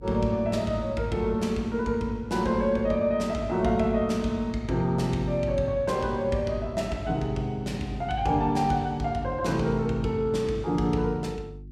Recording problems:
hum; 50 Hz, harmonics up to 350 Hz, SNR 18 dB

